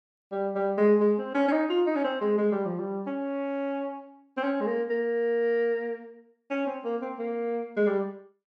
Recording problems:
none

